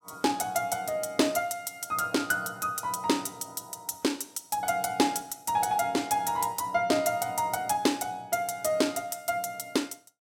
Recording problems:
none

